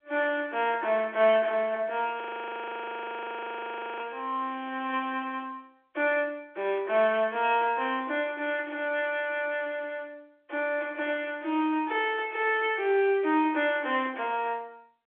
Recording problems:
phone line; 280 Hz to 3.5 kHz, G.711
audio freezing; at 2 s for 2 s

